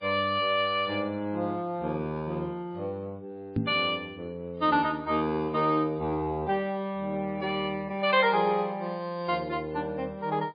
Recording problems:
lossy compression; MP3, log-spectral distance 2 dB, nothing above 4.2 kHz
knock on the microphone; at 3.5 s; peak +4 dB vs average level

